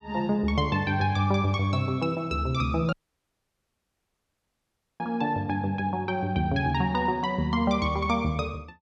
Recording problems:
audio cutting out; at 3 s for 2 s

